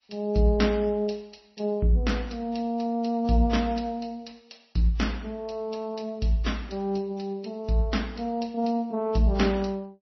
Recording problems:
lossy compression; MP3, then AAC, log-spectral distance 3 dB, nothing above 5.8 kHz

